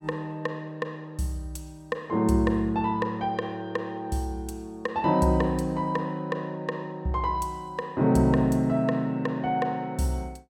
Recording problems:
none

